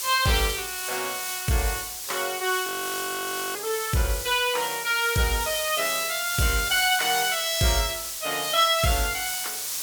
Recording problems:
hiss; slope +3 dB per octave, SNR 5 dB
audio freezing; at 2.5 s for 1 s

